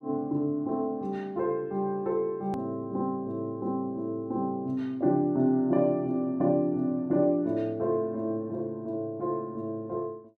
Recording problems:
hard cut with a click; at 2.5 s

